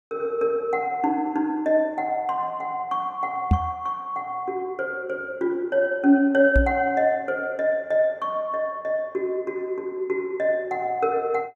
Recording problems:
microphone bump; at 3.5 s and at 6.5 s; peak +8 dB vs average level

